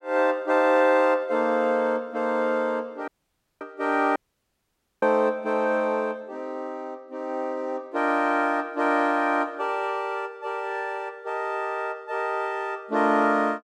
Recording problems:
audio cutting out; at 3 s for 0.5 s and at 4 s for 1 s

